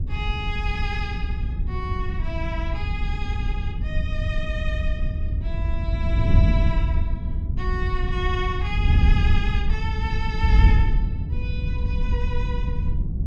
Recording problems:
wind on the microphone; below 88 Hz, SNR -7 dB

